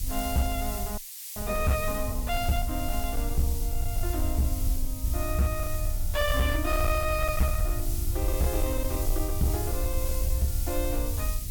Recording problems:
distorted audio; hard clipping, signal-to-distortion ratio 12 dB
electrical hum; 60 Hz, harmonics up to 720 Hz, SNR 22 dB
background hiss; SNR 6 dB
low-frequency rumble; below 70 Hz, SNR 1 dB
frozen audio; at 1 s

